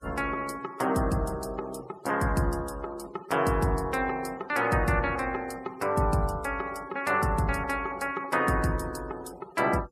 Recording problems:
noise reduction artefacts; signal-to-artefact ratio 23 dB

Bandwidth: 14.5 kHz